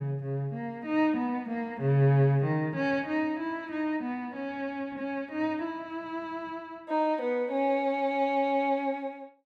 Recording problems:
none

